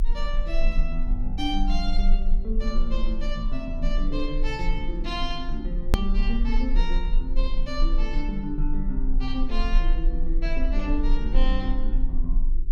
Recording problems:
electrical hum; 50 Hz, harmonics up to 400 Hz, SNR 18 dB
rumble; below 34 Hz, strongest tone 24 Hz, SNR -3 dB
click at an edit; at 6 s

